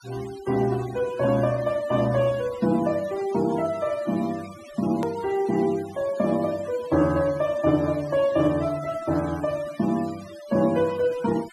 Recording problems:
noise reduction artefacts; signal-to-artefact ratio 19 dB
hard cut with a click; at 5 s

